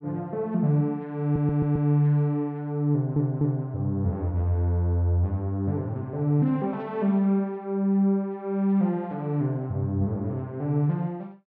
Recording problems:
audio stuttering; at 1 s and at 3 s

